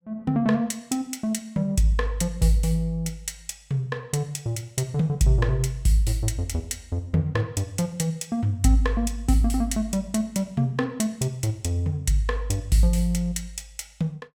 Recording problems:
none

